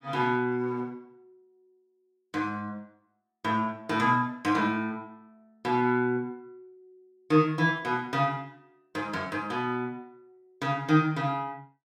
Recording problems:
none

